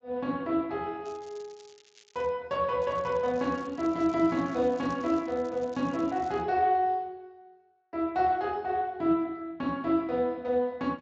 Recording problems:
lossy compression; Speex, log-spectral distance 4 dB
crackling; from 1 to 2.5 s and from 3 to 6.5 s; loose cable, SNR 27 dB

